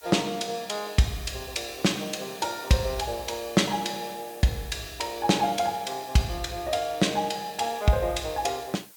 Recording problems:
background hiss; slope +1 dB per octave, SNR 19 dB

